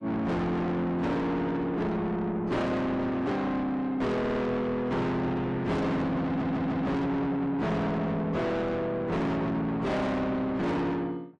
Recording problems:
lossy codec; AAC, log-spectral distance 2 dB, nothing above 10.1 kHz
distortion; soft clipping, signal-to-distortion ratio 6 dB
stutter; at 4 s and at 6.5 s

